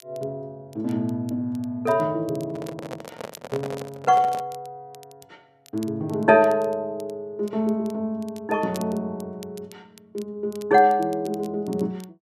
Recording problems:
crackling; vinyl, SNR 25 dB
handling noise; from 2.5 to 4.5 s; peak -5 dB vs average level

